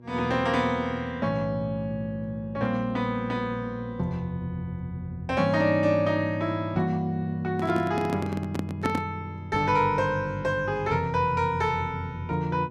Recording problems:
hum; 60 Hz, harmonics up to 960 Hz, SNR 22 dB
microphone handling noise; from 7.5 to 9 s; peak +3 dB vs average level

